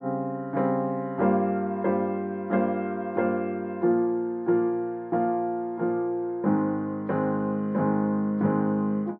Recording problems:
treble cut off; nothing above 5.5 kHz

